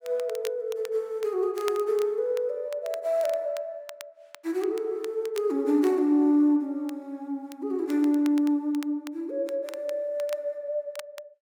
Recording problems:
crackling; vinyl, SNR 21 dB

